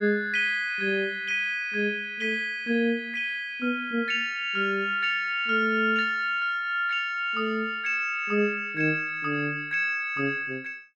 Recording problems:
none

